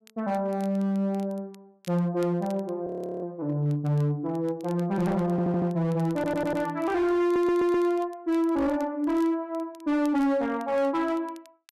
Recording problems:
distortion; hard clipping, signal-to-distortion ratio 11 dB
crackling; vinyl, SNR 28 dB
frozen audio; at 3 s
stutter; at 5.5 s, at 6 s and at 7 s

